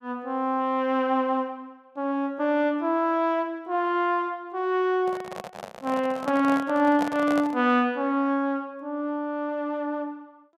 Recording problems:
microphone handling noise; from 5 to 7.5 s; peak -2 dB vs average level

